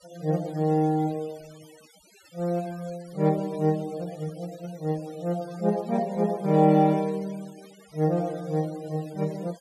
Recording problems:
denoising artefacts; signal-to-artefact ratio 24 dB

